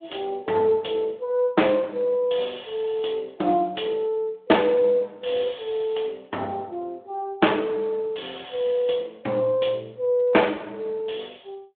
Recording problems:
phone line; 260 Hz to 3.5 kHz, Speex

